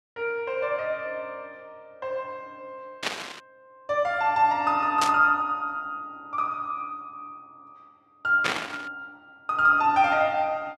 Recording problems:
static burst; at 3 s, at 5 s and at 8.5 s; peak +3 dB vs average level

